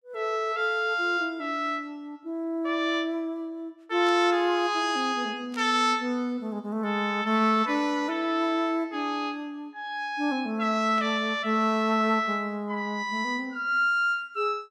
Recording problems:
static burst; at 4 s, at 5.5 s and at 11 s; peak -13 dB vs average level

